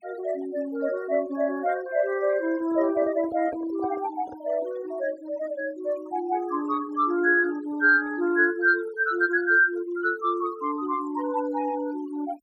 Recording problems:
noise reduction artefacts; signal-to-artefact ratio 21 dB
microphone handling noise; from 2.5 to 4.5 s; peak -9 dB vs average level

